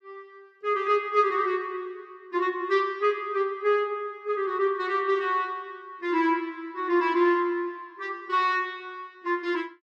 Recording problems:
none

